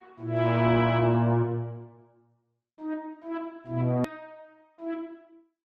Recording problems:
lossy compression; Opus, log-spectral distance 2 dB, nothing above 13.1 kHz
click at an edit; at 4 s

